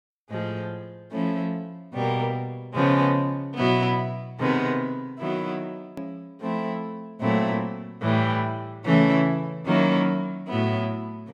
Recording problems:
hard cut with a click; at 6 s

